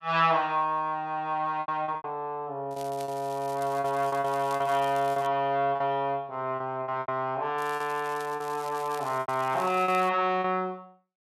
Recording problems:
packet loss; 8% of the sound replaced, filled with repeated pitch periods
crackling; from 2.5 to 5.5 s and from 7.5 to 10 s; loose cable, SNR 20 dB

